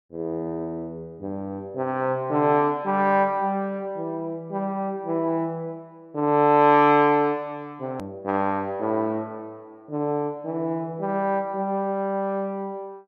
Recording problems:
edit click; at 8 s

